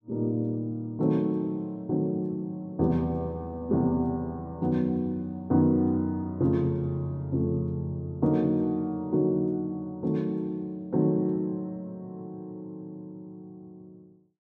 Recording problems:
none

